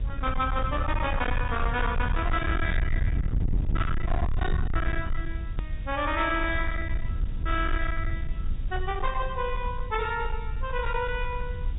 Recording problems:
treble cut off; nothing above 4 kHz
distortion; hard clipping, signal-to-distortion ratio 7 dB
background hiss; SNR 27 dB
rumble; below 78 Hz, SNR 1 dB
edit click; at 5.5 s

